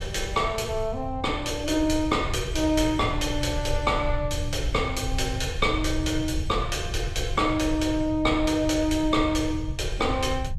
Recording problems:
low-frequency rumble; below 100 Hz, SNR 7 dB

